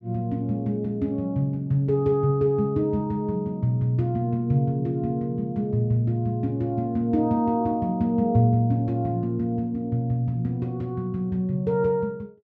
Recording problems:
none

